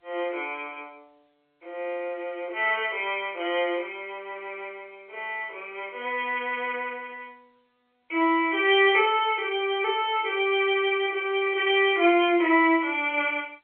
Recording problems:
telephone audio; 300 Hz to 3.2 kHz, G.711

